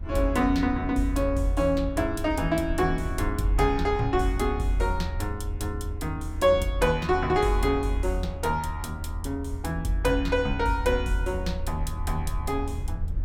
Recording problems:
low-frequency rumble; below 80 Hz, SNR 7 dB

